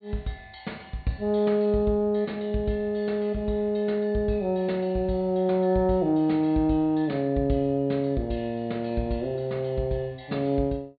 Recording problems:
treble missing; nothing above 4.4 kHz

